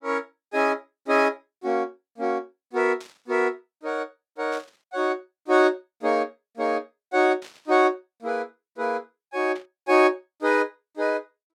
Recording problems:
burst of static; 4 times, first at 3 s; peak -14 dB vs average level

